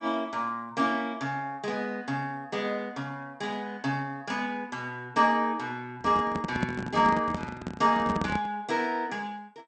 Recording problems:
lossy codec; MP2, log-spectral distance 2 dB, nothing above 8.2 kHz
microphone handling noise; from 6 to 8.5 s; peak +4 dB vs average level

